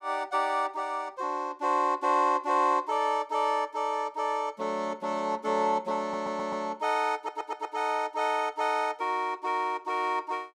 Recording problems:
audio stuttering; at 6 s and at 7 s

